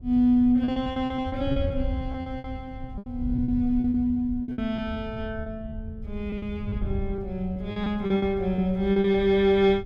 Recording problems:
wind on the microphone; below 110 Hz, SNR 11 dB
packet loss; 14% of the sound replaced, filled with repeated pitch periods

